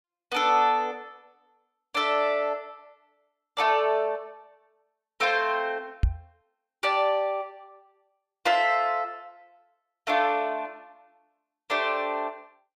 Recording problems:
microphone bump; at 6 s; peak +6 dB vs average level

